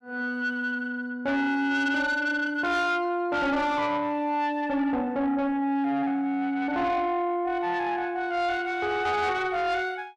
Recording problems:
distorted audio; soft clipping, signal-to-distortion ratio 11 dB

